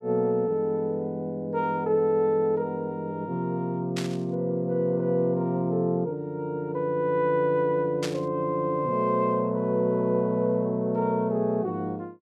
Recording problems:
static burst; at 4 s and at 8 s; peak -3 dB vs average level

